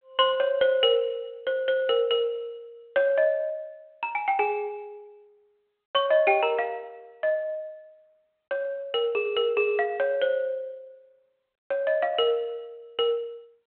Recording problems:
telephone audio; 220 Hz to 3.2 kHz, G.726

